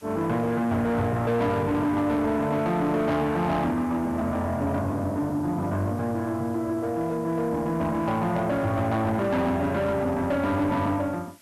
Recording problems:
distortion; soft clipping, signal-to-distortion ratio 11 dB
background hiss; slope -1 dB per octave, SNR 27 dB

